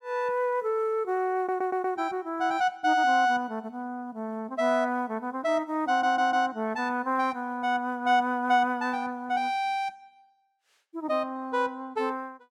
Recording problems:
audio stuttering; at 1.5 s and at 6 s

